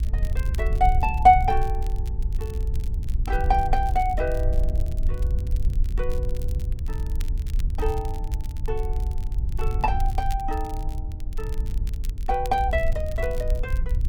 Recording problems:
wind noise; below 64 Hz, SNR 3 dB
crackling; vinyl, SNR 24 dB

